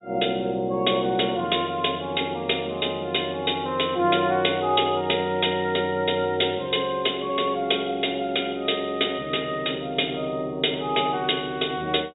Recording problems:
treble missing; nothing above 4 kHz

